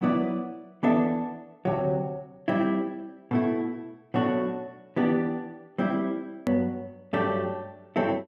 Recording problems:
edit click; at 6.5 s

